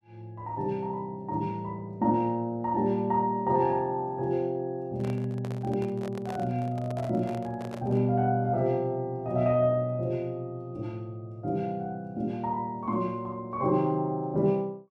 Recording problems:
handling noise; from 5 to 8 s; peak -7 dB vs average level

